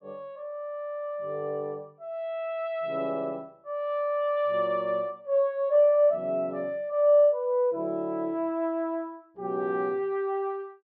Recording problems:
treble missing; nothing above 5.5 kHz

